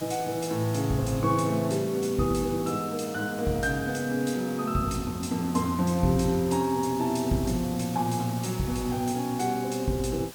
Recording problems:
background hiss; slope -2 dB per octave, SNR 15 dB

